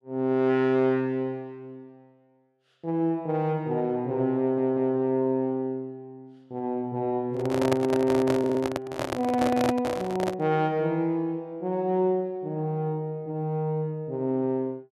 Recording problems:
audio stuttering; at 4.5 s and at 8.5 s
microphone handling noise; from 7.5 to 10 s; peak +4 dB vs average level

